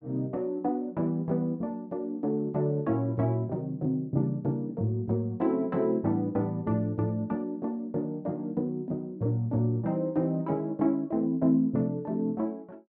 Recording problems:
none

